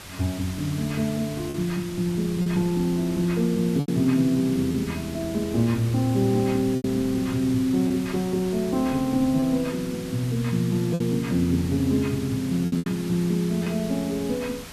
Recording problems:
hiss; slope 0 dB per octave, SNR 15 dB
wind on the microphone; below 270 Hz, SNR 20 dB
packet loss; 4% of the sound replaced, filled with repeated pitch periods

